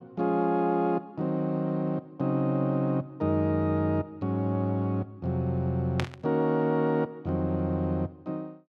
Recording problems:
burst of static; at 6 s; peak 0 dB vs average level

